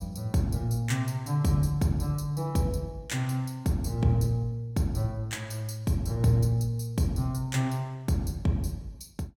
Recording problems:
none

